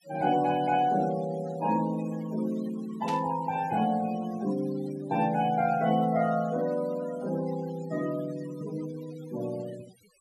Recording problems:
denoising artefacts; signal-to-artefact ratio 17 dB
static burst; at 3 s; peak -7 dB vs average level

